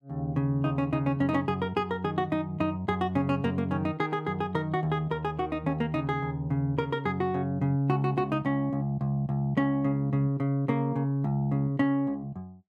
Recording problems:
none

